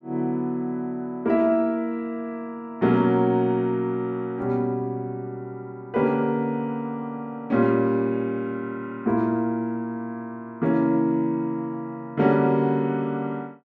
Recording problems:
none

